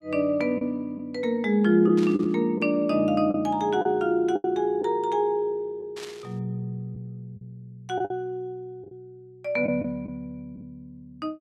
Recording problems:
lost packets; 5% of the sound replaced, filled with the last packet
static burst; at 2 s and at 6 s; peak -10 dB vs average level

